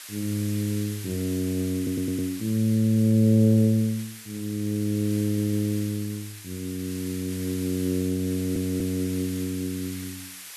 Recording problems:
background hiss; SNR 14 dB
audio stuttering; at 2 s, at 5 s and at 8.5 s

